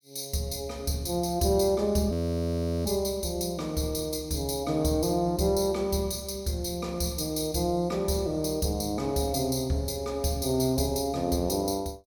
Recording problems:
frozen audio; at 2 s for 0.5 s

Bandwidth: 17 kHz